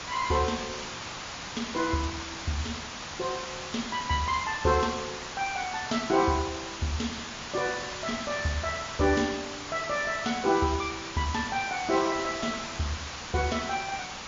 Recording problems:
lossy compression; MP3, log-spectral distance 13 dB
hiss; SNR 7 dB

